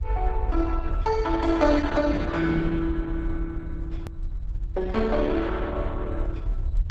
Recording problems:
lossy compression; Opus, log-spectral distance 2 dB
low-frequency rumble; below 60 Hz, SNR 4 dB
click at an edit; at 4 s

